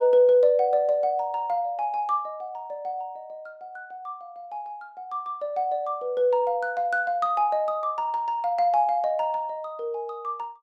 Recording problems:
none

